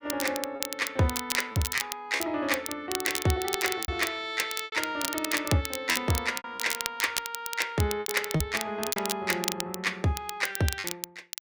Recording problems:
crackle; vinyl, SNR 4 dB
packet loss; 8% of the sound replaced, filled with repeated pitch periods

